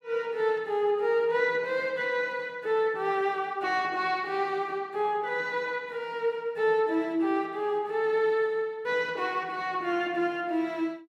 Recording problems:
none

